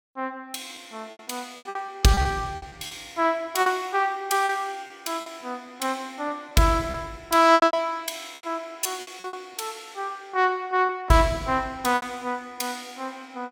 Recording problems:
lost packets; 10% of the sound replaced, filled with repeated pitch periods

